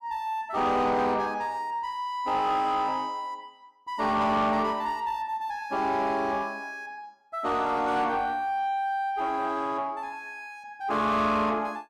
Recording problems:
distortion; soft clipping, signal-to-distortion ratio 11 dB

